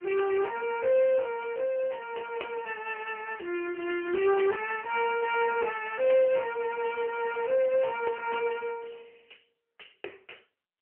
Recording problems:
telephone audio; 280 Hz to 3.1 kHz, AMR-NB

